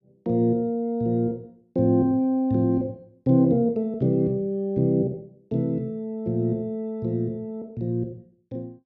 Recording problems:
none

